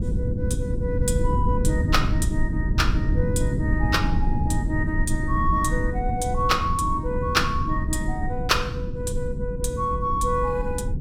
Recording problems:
low-frequency rumble; below 140 Hz, SNR 0 dB

